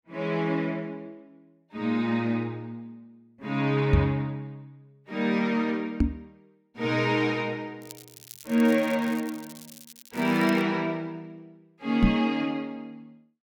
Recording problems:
knock on the microphone; at 4 s, at 6 s and at 12 s; peak +9 dB vs average level
crackle; from 8 to 11 s; loose cable, SNR 19 dB

